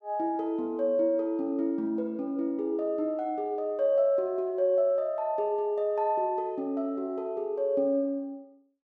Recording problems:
none

